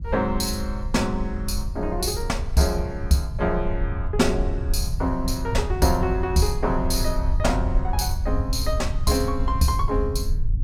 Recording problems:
low-frequency rumble; below 76 Hz, SNR 3 dB

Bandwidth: 16.5 kHz